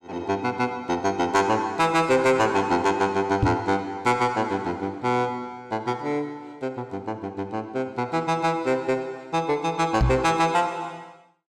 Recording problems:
distortion; soft clipping, signal-to-distortion ratio 11 dB
knock on the microphone; at 3.5 s and at 10 s; peak +6 dB vs average level

